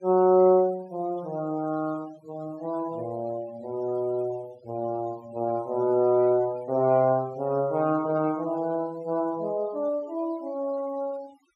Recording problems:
denoising artefacts; signal-to-artefact ratio 24 dB

